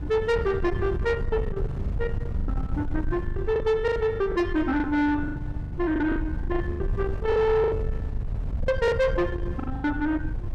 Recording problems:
distortion; soft clipping, signal-to-distortion ratio 11 dB
wind noise; below 130 Hz, SNR 6 dB
lost packets; 13% of the sound replaced, filled with the last packet

